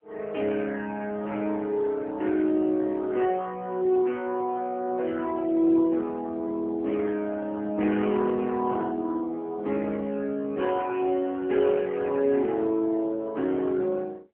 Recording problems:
telephone audio; 190 Hz to 3.3 kHz, AMR-NB

